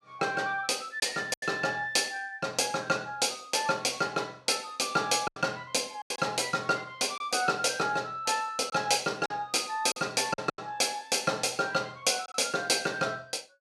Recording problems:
packet loss; 4% of the sound replaced, filled with silence

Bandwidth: 14.5 kHz